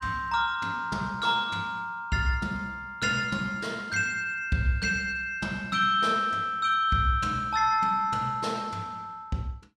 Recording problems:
none

